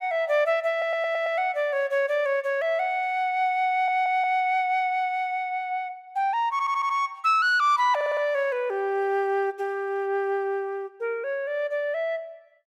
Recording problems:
audio stuttering; 4 times, first at 0.5 s

